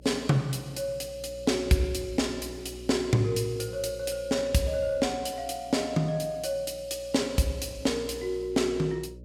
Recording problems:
electrical hum; 60 Hz, harmonics up to 600 Hz, SNR 19 dB

